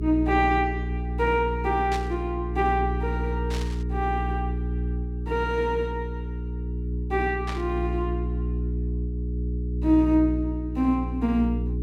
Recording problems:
electrical hum; 60 Hz, harmonics up to 420 Hz, SNR 4 dB
static burst; at 2 s, at 3.5 s and at 7.5 s; peak -6 dB vs average level

